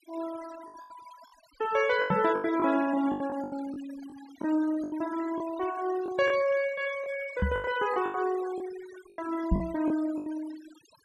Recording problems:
noise reduction artefacts; signal-to-artefact ratio 15 dB
lost packets; 11% of the sound replaced, filled with the last packet
microphone thump; at 2 s, at 7.5 s and at 9.5 s; peak +7 dB vs average level

